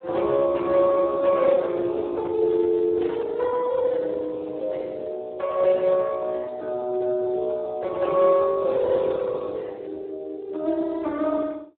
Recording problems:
telephone audio; 300 Hz to 2.2 kHz, Speex
static burst; at 3 s; peak -18 dB vs average level

